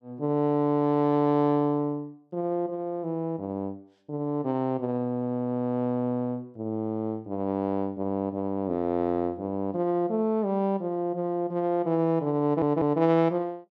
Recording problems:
audio stuttering; at 12 s

